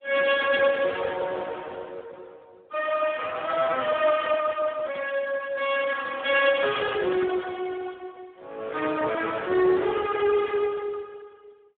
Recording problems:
phone line; 320 Hz to 3.6 kHz, Speex

